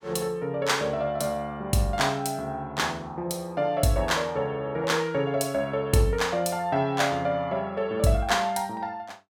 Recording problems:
none

